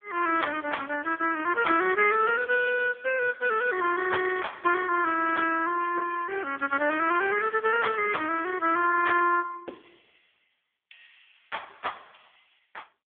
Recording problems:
telephone audio; 280 Hz to 3 kHz, AMR-NB

